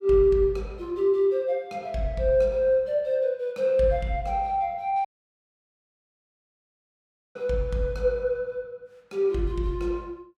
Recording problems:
audio cutting out; at 5 s for 2.5 s

